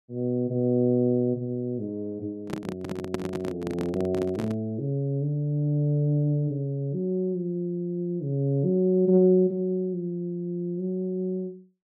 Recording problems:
microphone handling noise; from 2.5 to 4.5 s; peak 0 dB vs average level

